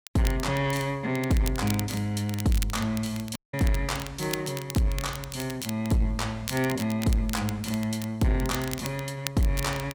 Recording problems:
distorted audio; soft clipping, signal-to-distortion ratio 11 dB
crackling; vinyl, SNR 11 dB
dropout; at 3.5 s

